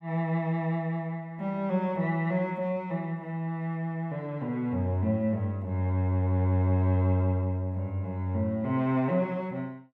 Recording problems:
none

